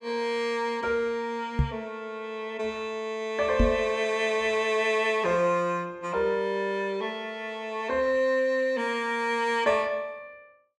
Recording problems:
microphone thump; at 1.5 s and at 3.5 s; peak +6 dB vs average level

